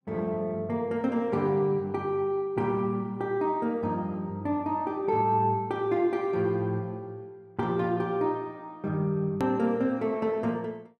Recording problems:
edit click; at 9.5 s

